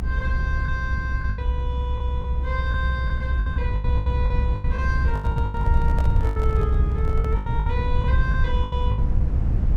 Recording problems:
low-frequency rumble; below 90 Hz, SNR -8 dB
lost packets; 14% of the sound replaced, filled with the last packet
handling noise; from 5 to 7.5 s; peak 0 dB vs average level

